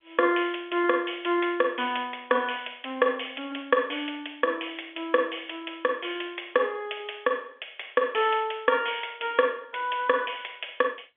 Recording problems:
telephone audio; 260 Hz to 3.4 kHz, G.711

